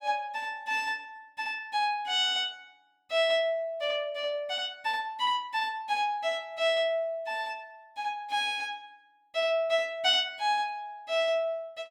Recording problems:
none

